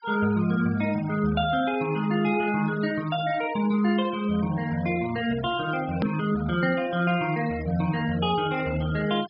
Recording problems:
treble cut off; nothing above 5.5 kHz
noise reduction artefacts; signal-to-artefact ratio 16 dB
hard cut with a click; at 6 s

